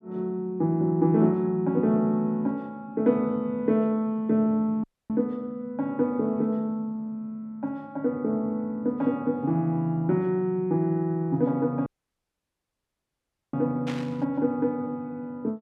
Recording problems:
audio cutting out; at 5 s and at 12 s for 1.5 s
burst of static; at 14 s; peak -7 dB vs average level

